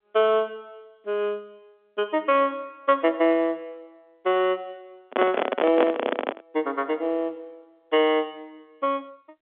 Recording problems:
phone line; 240 Hz to 3.5 kHz, G.711
handling noise; from 5 to 6.5 s; peak +4 dB vs average level

